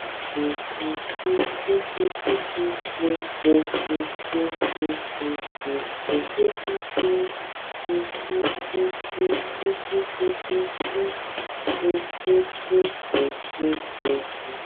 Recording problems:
phone line; 300 Hz to 3.6 kHz, AMR-NB
hiss; SNR 6 dB
lost packets; 12% of the sound replaced, filled with silence

